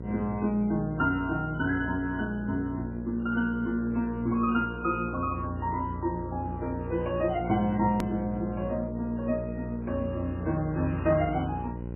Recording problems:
codec artefacts; MP3, log-spectral distance 2 dB, nothing above 2.5 kHz
electrical hum; 60 Hz, harmonics up to 900 Hz, SNR 8 dB
hard cut with a click; at 8 s

